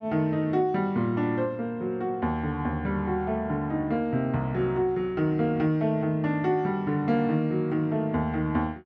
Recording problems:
none

